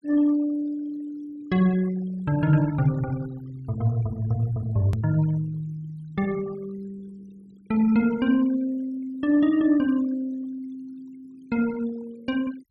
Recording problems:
noise reduction artefacts; signal-to-artefact ratio 23 dB
click at an edit; at 5 s

